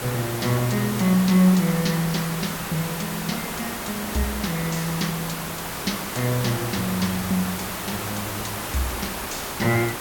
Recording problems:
hiss; slope -4 dB per octave, SNR 5 dB

